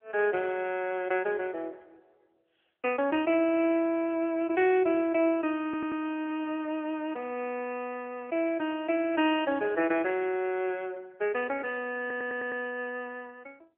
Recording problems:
telephone audio; 280 Hz to 3.3 kHz, AMR-NB
audio stuttering; at 5.5 s and at 12 s

